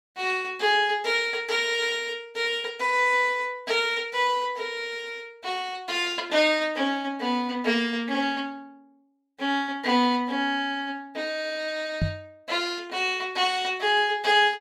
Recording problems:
knock on the microphone; at 12 s; peak +3 dB vs average level

